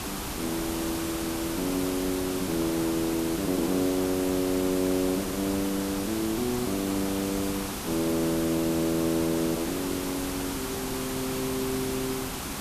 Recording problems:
background hiss; SNR 4 dB

